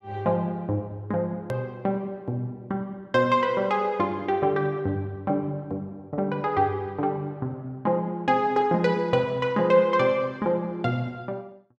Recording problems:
click at an edit; at 1.5 s

